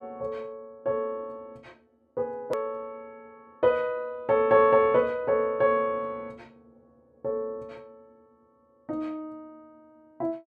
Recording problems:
hard cut with a click; at 2.5 s

